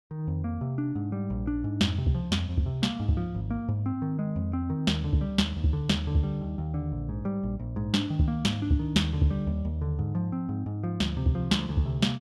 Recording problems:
none

